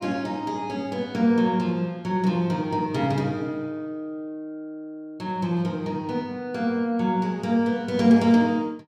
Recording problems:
none

